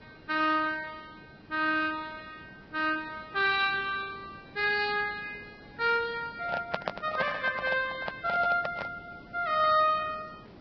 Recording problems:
lossy compression; Vorbis, log-spectral distance 4 dB
background hiss; slope -7 dB per octave, SNR 22 dB
microphone handling noise; from 6.5 to 9 s; peak +2 dB vs average level

